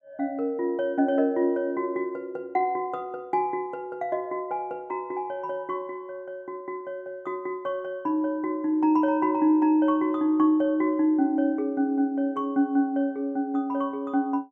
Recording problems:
none

